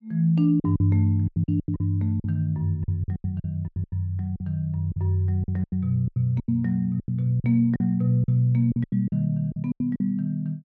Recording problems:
packet loss; 15% of the sound replaced, filled with silence

